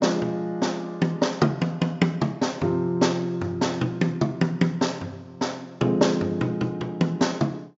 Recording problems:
low-pass filter; nothing above 8 kHz

